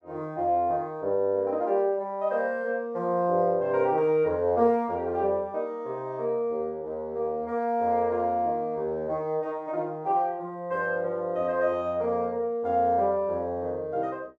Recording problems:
none

